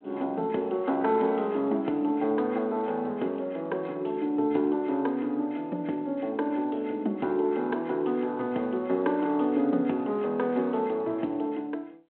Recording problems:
telephone audio; 220 Hz to 3.3 kHz, G.726

